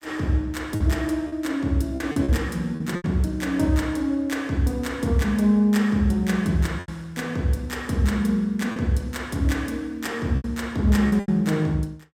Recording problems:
packet loss; 5% of the sound replaced, filled with repeated pitch periods

